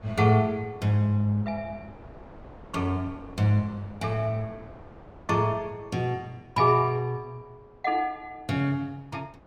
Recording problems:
wind noise; below 670 Hz, SNR 22 dB

